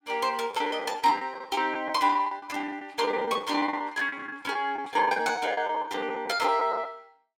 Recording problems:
lost packets; 19% of the sound replaced, filled with the last packet

